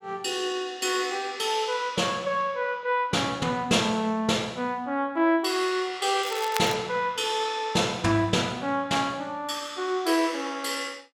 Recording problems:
crackle; at 6 s; loose cable, SNR 11 dB

